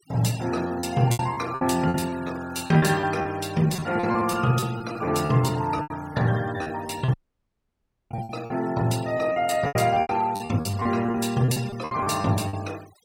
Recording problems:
noise reduction artefacts; signal-to-artefact ratio 19 dB
packet loss; 15% of the sound replaced, filled with repeated pitch periods
audio cutting out; at 7 s for 1 s

